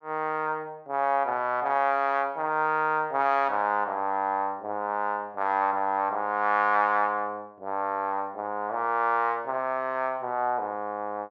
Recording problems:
low-pass filter; nothing above 8 kHz

